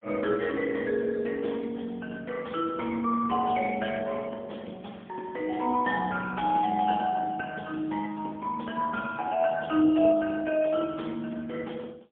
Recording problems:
phone line; 220 Hz to 2.8 kHz, AMR-NB, then MP3

